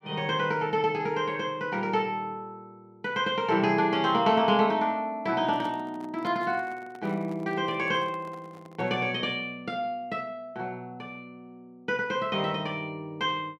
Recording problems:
handling noise; from 5.5 to 9 s; peak -12 dB vs average level

